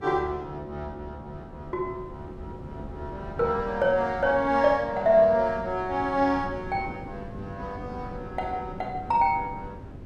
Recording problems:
wind noise; below 320 Hz, SNR 15 dB

